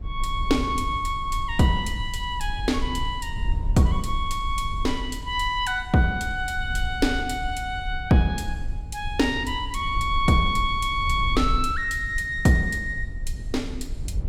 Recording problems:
low-frequency rumble; below 64 Hz, SNR 8 dB

